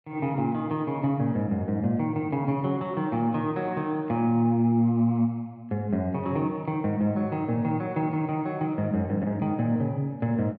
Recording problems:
none

